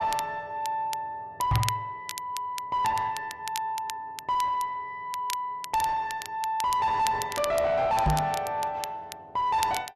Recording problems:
distorted audio; soft clipping, signal-to-distortion ratio 6 dB
crackling; vinyl, SNR 11 dB
microphone thump; at 1.5 s and at 8 s; peak +9 dB vs average level

